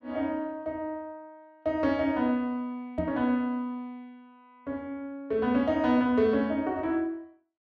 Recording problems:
microphone thump; at 3 s; peak -2 dB vs average level

